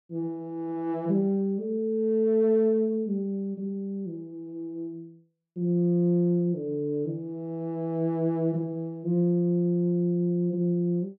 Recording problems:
none

